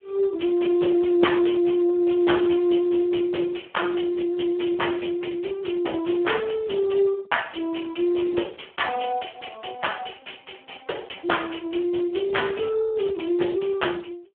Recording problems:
telephone audio; 280 Hz to 3.3 kHz, Speex

